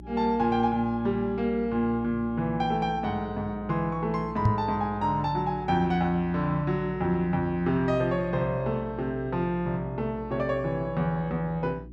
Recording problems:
electrical hum; 60 Hz, harmonics up to 360 Hz, SNR 16 dB
microphone thump; at 4.5 s; peak +7 dB vs average level

